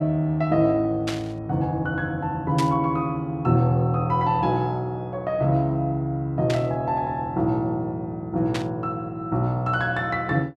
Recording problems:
burst of static; 4 times, first at 1 s; peak -2 dB vs average level

